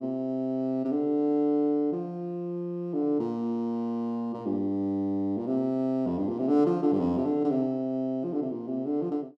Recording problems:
none

